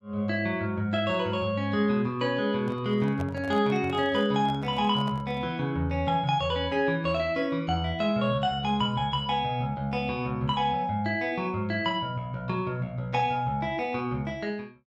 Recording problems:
microphone handling noise; from 2.5 to 5.5 s; peak -8 dB vs average level

